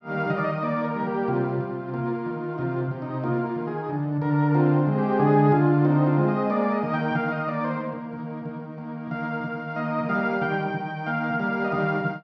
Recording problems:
none

